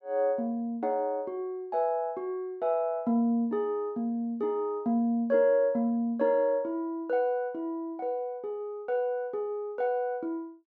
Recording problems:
none

